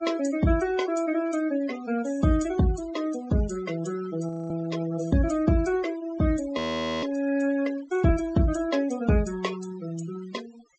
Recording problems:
treble missing; nothing above 8 kHz
noise reduction artefacts; signal-to-artefact ratio 17 dB
audio freezing; at 4.5 s and at 6.5 s

